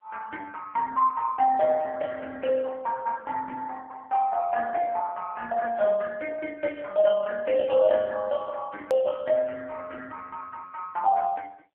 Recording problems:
telephone audio; 320 Hz to 3.2 kHz, AMR-NB
edit click; at 9 s

